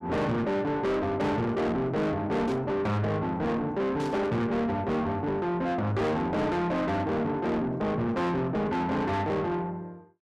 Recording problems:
distortion; soft clipping, signal-to-distortion ratio 7 dB
burst of static; at 2.5 s and at 4 s; peak -12 dB vs average level

